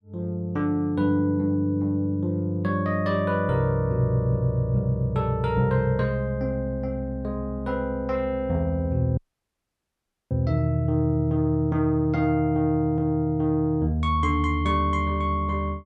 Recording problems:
audio cutting out; at 9 s for 1 s

